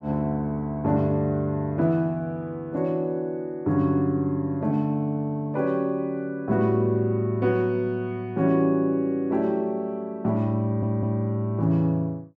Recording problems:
audio stuttering; at 11 s

